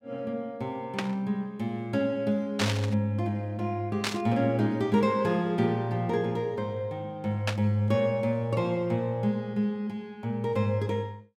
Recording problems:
burst of static; 4 times, first at 1 s; peak +4 dB vs average level

